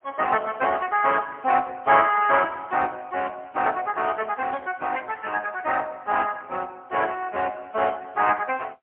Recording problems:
phone line; 300 Hz to 3.3 kHz, AMR-NB, then MP3

